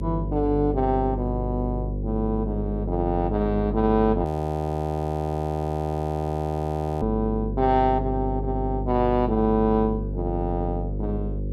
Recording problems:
hum; 50 Hz, harmonics up to 550 Hz, SNR 5 dB
frozen audio; at 4.5 s for 3 s

